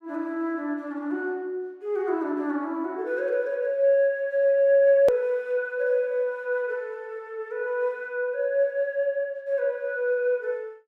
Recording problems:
edit click; at 5 s

